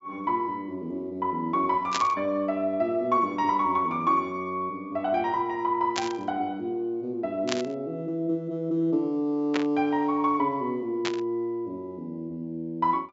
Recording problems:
low-pass filter; nothing above 8 kHz
static burst; 5 times, first at 2 s; peak +3 dB vs average level

